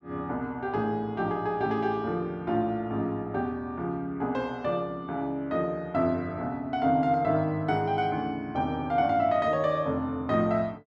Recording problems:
none

